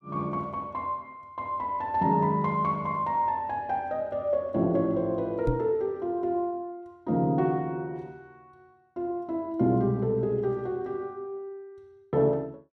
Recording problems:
microphone bump; at 5.5 s; peak +4 dB vs average level

